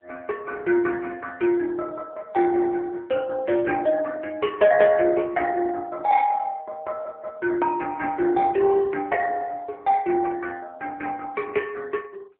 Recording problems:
telephone audio; 300 Hz to 2.8 kHz, AMR-NB

